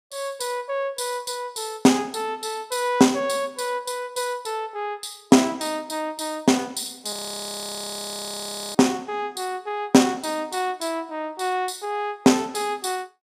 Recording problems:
audio freezing; at 7 s for 1.5 s

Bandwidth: 15 kHz